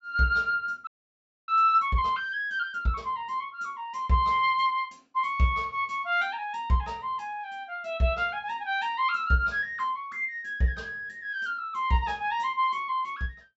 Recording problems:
treble cut off; nothing above 8 kHz
audio freezing; at 1 s for 0.5 s

